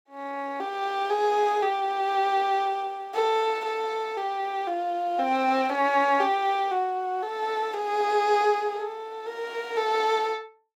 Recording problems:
none

